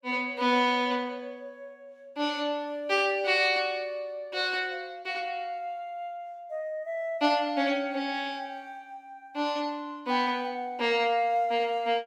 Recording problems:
none

